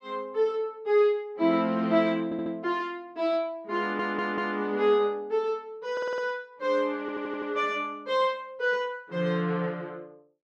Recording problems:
audio stuttering; 4 times, first at 2.5 s

